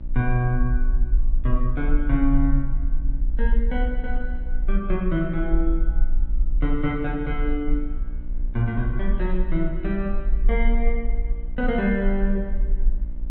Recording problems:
hum; 60 Hz, harmonics up to 900 Hz, SNR 17 dB
rumble; below 42 Hz, strongest tone 20 Hz, SNR 0 dB

